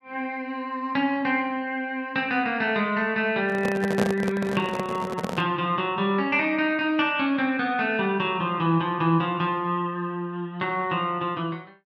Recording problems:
handling noise; from 3.5 to 5.5 s; peak +4 dB vs average level

